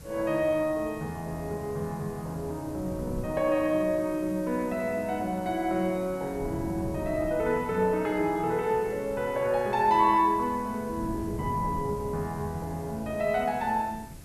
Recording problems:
background hiss; slope -1 dB per octave, SNR 23 dB
wind noise; below 240 Hz, SNR 14 dB

